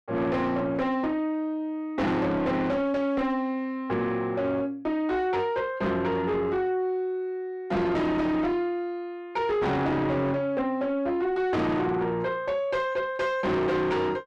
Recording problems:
distortion; soft clipping, signal-to-distortion ratio 8 dB

